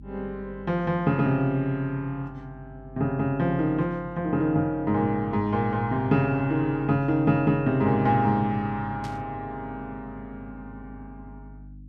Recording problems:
hum; 50 Hz, harmonics up to 300 Hz, SNR 21 dB
burst of static; at 9 s; peak -14 dB vs average level

